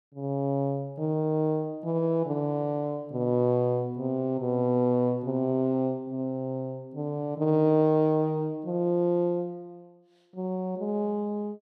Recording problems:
none

